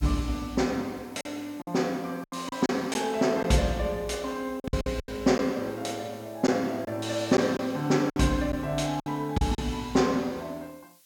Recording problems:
hiss; slope +3 dB per octave, SNR 27 dB
lost packets; 7% of the sound replaced, filled with silence

